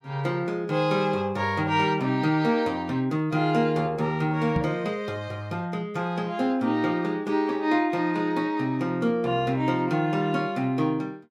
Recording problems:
microphone thump; at 4.5 s; peak +3 dB vs average level

